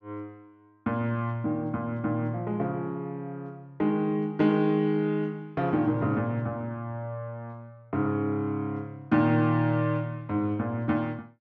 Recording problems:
none

